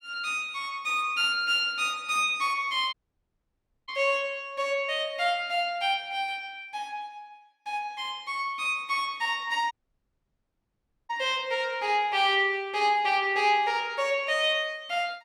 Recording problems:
audio cutting out; at 3 s for 1 s and at 9.5 s for 1.5 s

